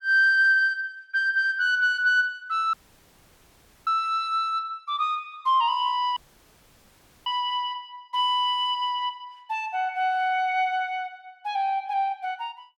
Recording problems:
audio cutting out; at 2.5 s for 1 s and at 6 s for 1 s

